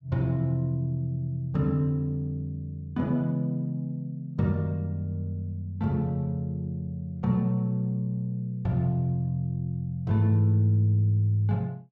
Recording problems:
none

